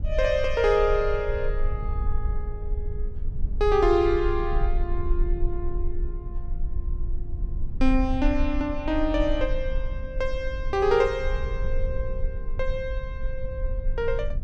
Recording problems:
rumble; below 50 Hz, strongest tone 24 Hz, SNR 5 dB

